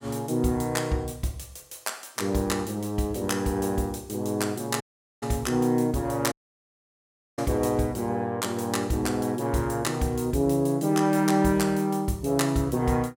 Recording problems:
dropout; at 5 s and at 6.5 s for 1 s

